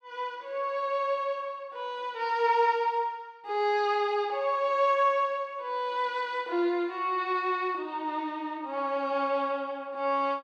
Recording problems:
none

